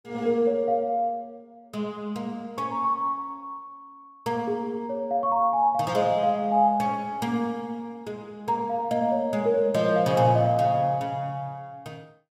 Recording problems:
none

